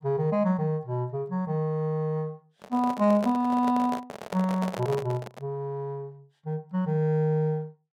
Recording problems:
handling noise; from 2.5 to 5.5 s; peak -3 dB vs average level

